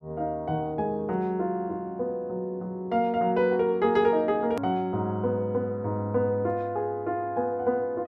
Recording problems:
click at an edit; at 4.5 s

